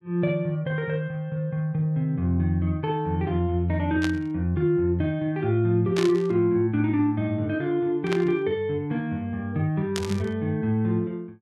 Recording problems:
static burst; 4 times, first at 4 s; peak -1 dB vs average level

